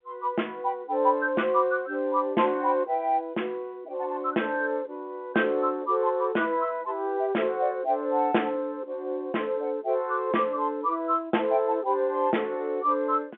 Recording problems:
telephone audio; 170 Hz to 3.3 kHz, G.711

